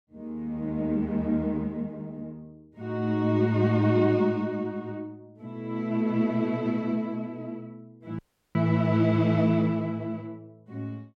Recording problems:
audio cutting out; at 8 s

